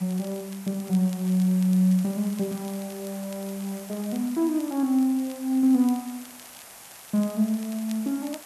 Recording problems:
hiss; SNR 17 dB
crackle; vinyl, SNR 24 dB

